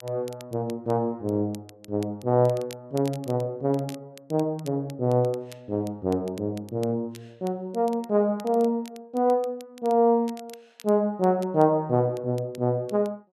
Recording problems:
crackling; vinyl, SNR 24 dB

